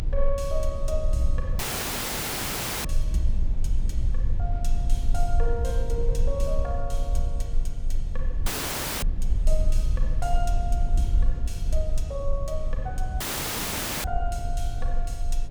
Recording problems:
hum; 60 Hz, harmonics up to 720 Hz, SNR 20 dB
rumble; below 46 Hz, strongest tone 22 Hz, SNR -5 dB
dropout; at 1.5 s for 1.5 s, at 8.5 s for 0.5 s and at 13 s for 1 s

